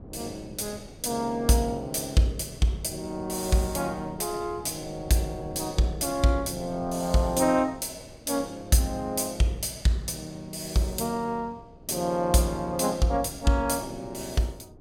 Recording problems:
wind noise; below 320 Hz, SNR 20 dB

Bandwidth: 16.5 kHz